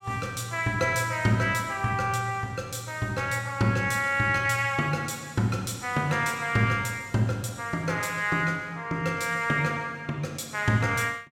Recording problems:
none

